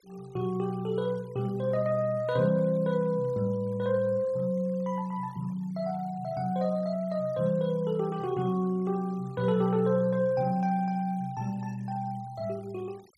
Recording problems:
denoising artefacts; signal-to-artefact ratio 27 dB

